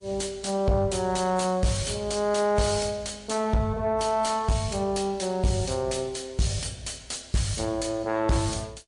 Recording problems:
lossy codec; MP3, log-spectral distance 6 dB
distorted audio; soft clipping, signal-to-distortion ratio 11 dB

